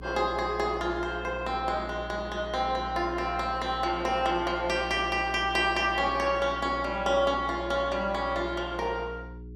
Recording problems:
hum; 60 Hz, harmonics up to 420 Hz, SNR 14 dB

